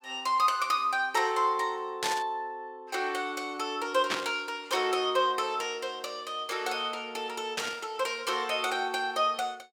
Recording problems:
static burst; at 2 s, at 4 s and at 7.5 s; peak +4 dB vs average level

